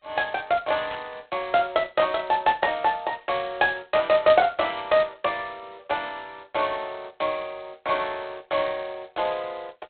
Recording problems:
telephone audio; 320 Hz to 3.9 kHz, G.726
static burst; at 1 s; peak -9 dB vs average level

